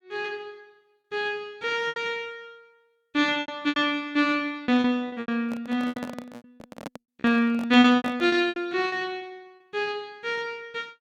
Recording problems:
lost packets; 10% of the sound replaced, filled with repeated pitch periods
microphone handling noise; from 5.5 to 8.5 s; peak -6 dB vs average level

